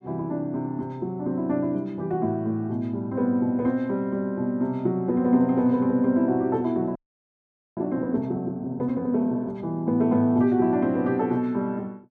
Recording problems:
frozen audio; at 7 s for 1 s

